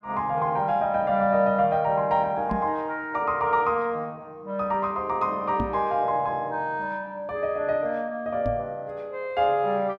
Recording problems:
microphone thump; at 2.5 s, at 5.5 s and at 8.5 s; peak 0 dB vs average level

